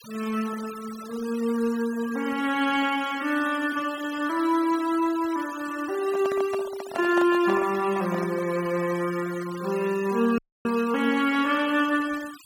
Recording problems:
noise reduction artefacts; signal-to-artefact ratio 17 dB
handling noise; from 6 to 8.5 s; peak -4 dB vs average level
audio cutting out; at 10 s

